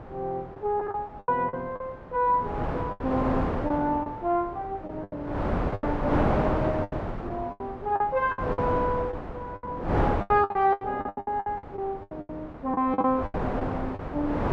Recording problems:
wind on the microphone; below 790 Hz, SNR 2 dB
lost packets; 14% of the sound replaced, filled with the last packet

